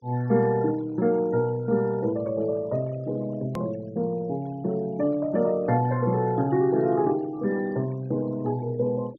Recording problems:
treble missing; nothing above 6.6 kHz
noise reduction artefacts; signal-to-artefact ratio 26 dB
click at an edit; at 3.5 s

